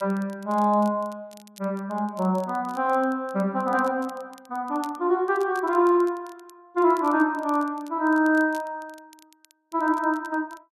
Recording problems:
crackling; vinyl, SNR 28 dB

